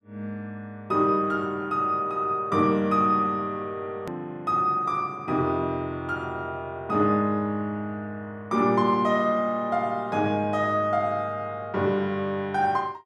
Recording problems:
edit click; at 4 s

